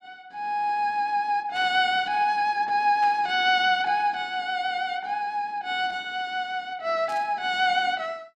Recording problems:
static burst; at 1.5 s, at 3 s and at 7 s; peak -12 dB vs average level

